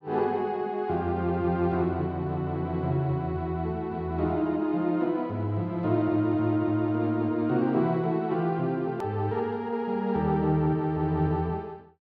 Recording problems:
hard cut with a click; at 9 s

